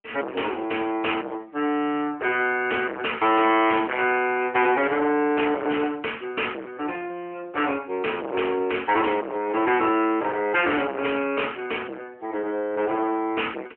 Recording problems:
telephone audio; 280 Hz to 3.1 kHz, AMR-NB
distorted audio; hard clipping, signal-to-distortion ratio 4 dB

